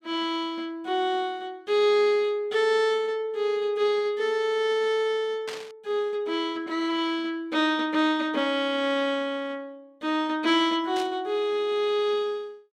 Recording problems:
static burst; at 5.5 s and at 11 s; peak -6 dB vs average level

